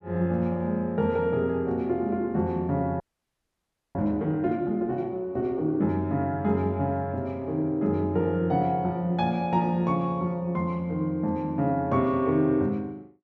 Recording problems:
audio freezing; at 3 s for 1 s

